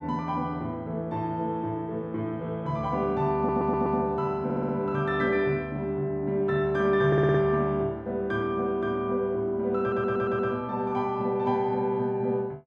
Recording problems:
audio stuttering; 4 times, first at 3.5 s

